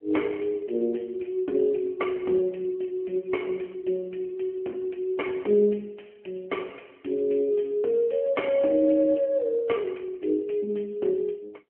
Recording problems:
phone line; 240 Hz to 3.1 kHz, AMR-NB

